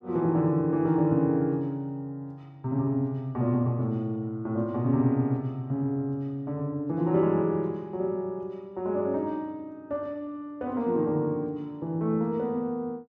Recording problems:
none

